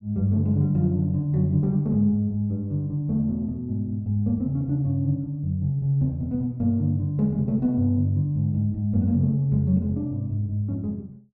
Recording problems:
none

